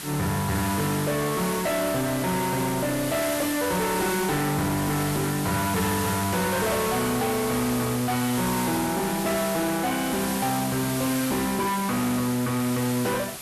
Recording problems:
distorted audio; soft clipping, signal-to-distortion ratio 7 dB
background hiss; slope -1 dB per octave, SNR 6 dB

